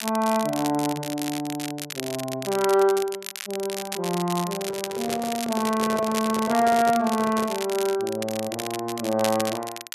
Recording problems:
crackle; vinyl, SNR 9 dB
microphone handling noise; from 4.5 to 7.5 s; peak -4 dB vs average level

